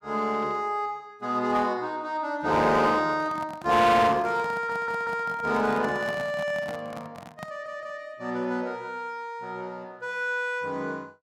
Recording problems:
distortion; hard clipping, uneven, signal-to-distortion ratio 10 dB
microphone handling noise; from 3 to 8 s; peak -6 dB vs average level
audio stuttering; at 4.5 s and at 7.5 s

